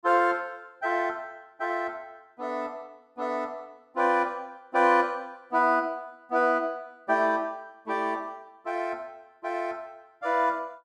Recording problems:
none

